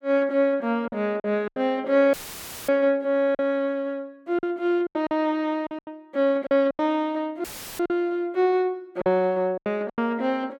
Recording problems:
packet loss; 9% of the sound replaced, filled with silence
dropout; at 2 s for 0.5 s and at 7.5 s; filled with static

